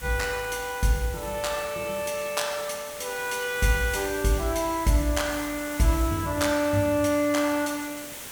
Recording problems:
hiss; slope -1 dB per octave, SNR 12 dB

